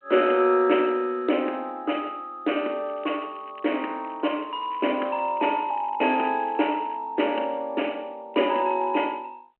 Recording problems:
phone line; 240 Hz to 3.1 kHz, G.726
crackling; from 3 to 5 s, from 5 to 7 s and at 8.5 s; loose cable, SNR 27 dB

